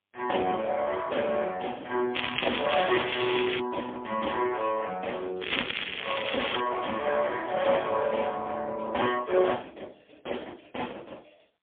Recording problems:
telephone audio; 280 Hz to 3.4 kHz, AMR-NB, then MP3
crackling; from 2 to 3.5 s and from 5.5 to 6.5 s; loose cable, SNR 2 dB

